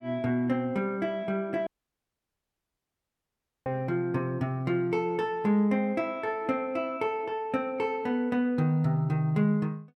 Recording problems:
dropout; at 1.5 s for 2 s

